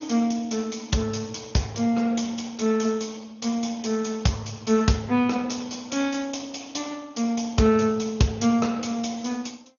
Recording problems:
lossy compression; Speex, then MP2, log-spectral distance 8 dB, nothing above 6.7 kHz

